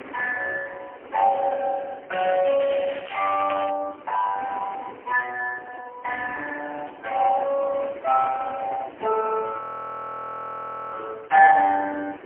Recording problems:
phone line; 240 Hz to 2.6 kHz, AMR-NB, then MP3
wind noise; below 1.6 kHz, SNR 20 dB
crackle; from 2 to 3.5 s; loose cable, SNR 12 dB
audio freezing; at 9.5 s for 1.5 s

